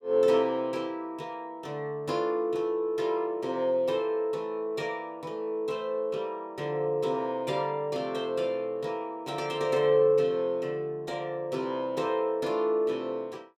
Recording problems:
none

